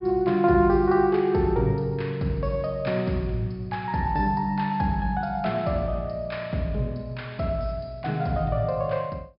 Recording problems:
treble missing; nothing above 5.5 kHz

